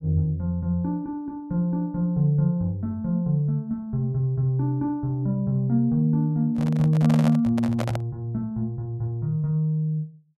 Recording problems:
handling noise; from 6.5 to 8 s; peak -1 dB vs average level

